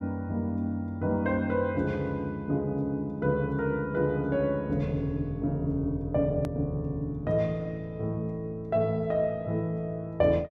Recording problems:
hard cut with a click; at 6.5 s

